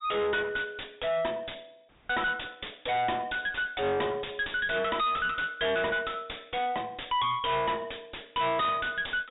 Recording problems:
low-pass filter; nothing above 4 kHz
distortion; hard clipping, uneven, signal-to-distortion ratio 4 dB
dropout; at 2 s

